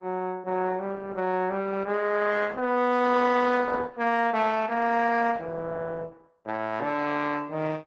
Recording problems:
codec artefacts; Opus, log-spectral distance 3 dB, nothing above 7.3 kHz

